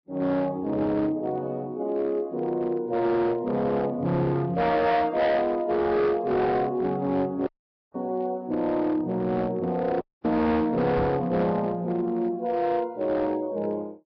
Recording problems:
lossy codec; Vorbis, log-spectral distance 2 dB
distortion; hard clipping, signal-to-distortion ratio 12 dB
audio cutting out; at 7.5 s and at 10 s
knock on the microphone; at 11 s; peak -2 dB vs average level

